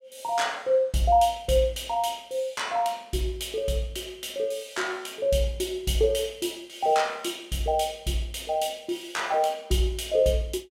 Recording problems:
none

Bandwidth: 16 kHz